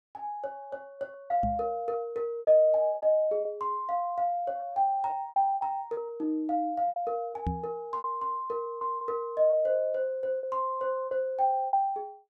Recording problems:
lost packets; 8% of the sound replaced, filled with repeated pitch periods
knock on the microphone; at 1.5 s and at 7.5 s; peak +1 dB vs average level

